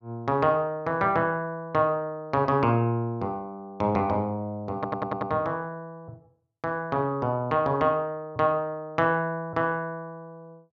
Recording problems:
stutter; at 5 s

